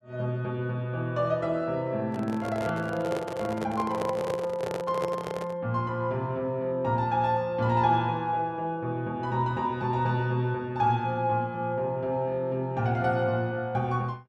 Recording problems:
microphone handling noise; from 2 to 5.5 s; peak -1 dB vs average level

